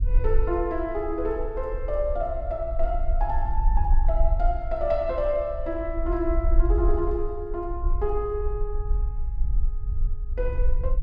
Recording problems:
low-frequency rumble; below 50 Hz, strongest tone 22 Hz, SNR 0 dB

